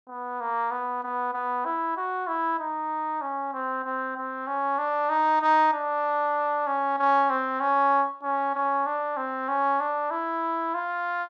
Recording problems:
none

